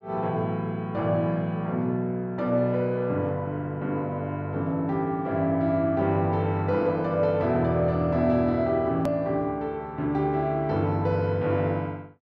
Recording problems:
click at an edit; at 9 s

